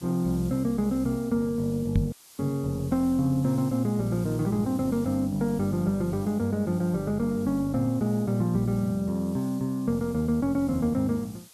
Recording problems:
hiss; slope +1 dB per octave, SNR 23 dB
knock on the microphone; at 2 s; peak +5 dB vs average level
audio cutting out; at 2 s

